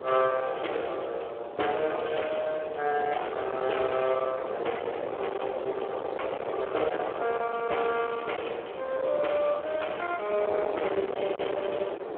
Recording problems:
telephone audio; 340 Hz to 3.3 kHz, Speex
distorted audio; hard clipping, uneven, signal-to-distortion ratio 10 dB
wind noise; below 780 Hz, SNR 6 dB

